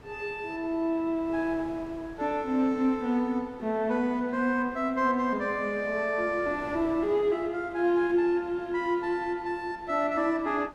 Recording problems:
wind noise; below 810 Hz, SNR 22 dB

